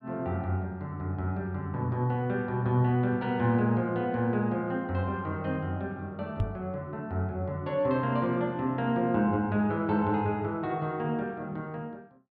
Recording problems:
knock on the microphone; at 6.5 s; peak +4 dB vs average level

